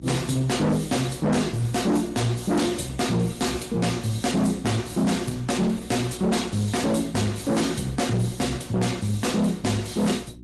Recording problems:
lossy codec; MP3, then Opus, log-spectral distance 6 dB
distorted audio; hard clipping, signal-to-distortion ratio 7 dB
mains hum; 60 Hz, harmonics up to 360 Hz, SNR 20 dB

